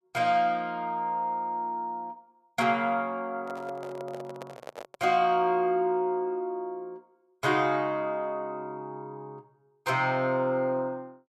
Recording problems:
handling noise; from 3.5 to 5 s; peak -8 dB vs average level

